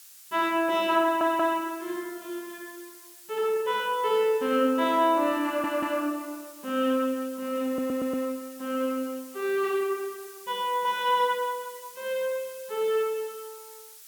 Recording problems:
background hiss; slope +4 dB per octave, SNR 19 dB
audio stuttering; at 1 s, at 5.5 s and at 7.5 s

